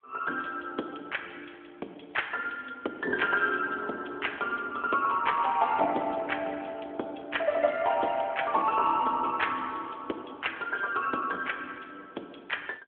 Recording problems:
telephone audio; 280 Hz to 3.4 kHz, AMR-NB

